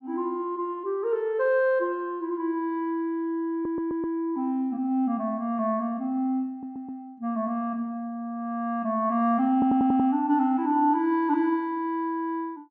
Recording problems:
audio stuttering; at 3.5 s, at 6.5 s and at 9.5 s

